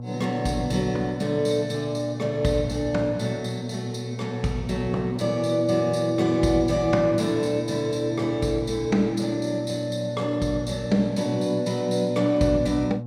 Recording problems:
hum; 60 Hz, harmonics up to 840 Hz, SNR 10 dB

